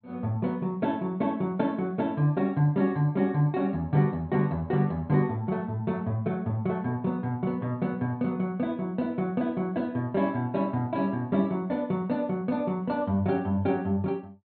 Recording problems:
treble cut off; nothing above 4.3 kHz

